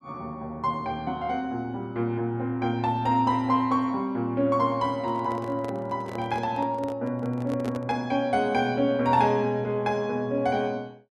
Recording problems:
microphone handling noise; from 5 to 8 s; peak -6 dB vs average level

